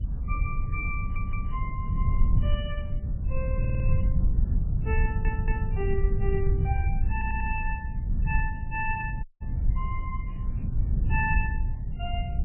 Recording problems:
lossy compression; MP3, then MP3, log-spectral distance 2 dB, nothing above 2.7 kHz
background hiss; SNR 26 dB
low-frequency rumble; below 88 Hz, SNR -6 dB
audio stuttering; 4 times, first at 1 s
audio cutting out; at 9 s

